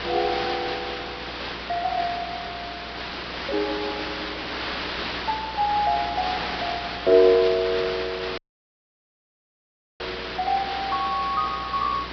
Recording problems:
treble missing; nothing above 5.5 kHz
hum; 60 Hz, harmonics up to 540 Hz, SNR 20 dB
background hiss; SNR 6 dB
static burst; at 7.5 s; peak -5 dB vs average level
audio cutting out; at 8.5 s for 1.5 s

